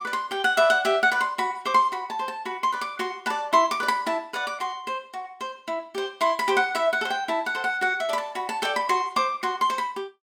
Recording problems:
none

